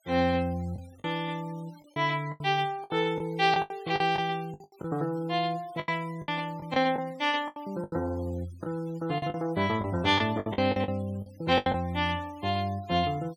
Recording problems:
denoising artefacts; signal-to-artefact ratio 24 dB
lost packets; 10% of the sound replaced, filled with the last packet

